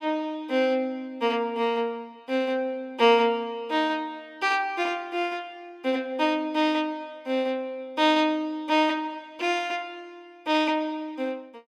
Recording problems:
none

